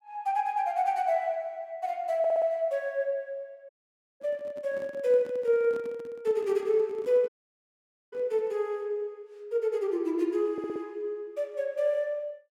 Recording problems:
stutter; at 2 s and at 11 s
handling noise; from 3.5 to 8.5 s; peak -12 dB vs average level
audio cutting out; at 3.5 s for 0.5 s and at 7.5 s for 1 s

